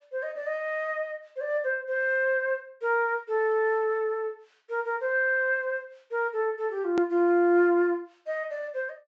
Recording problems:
treble cut off; nothing above 8 kHz
hard cut with a click; at 7 s

